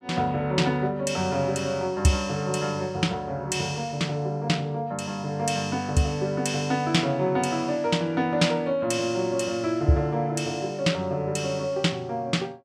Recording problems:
none

